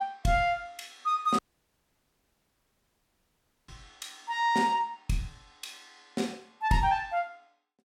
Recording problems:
audio cutting out; at 1.5 s for 2.5 s

